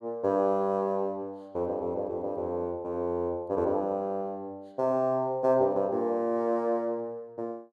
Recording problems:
none

